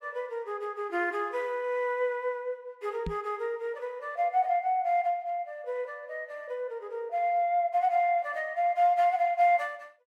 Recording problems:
microphone thump; at 3 s; peak -3 dB vs average level

